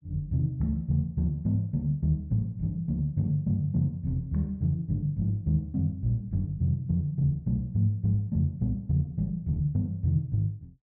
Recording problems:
none

